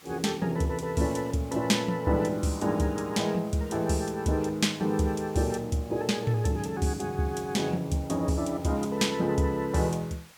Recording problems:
hiss; slope 0 dB per octave, SNR 24 dB

